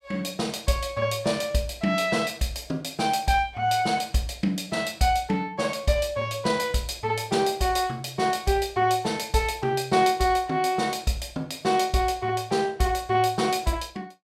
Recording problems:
none

